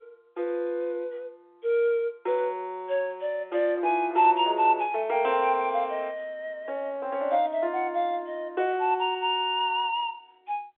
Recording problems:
telephone audio; 300 Hz to 3.8 kHz, G.711

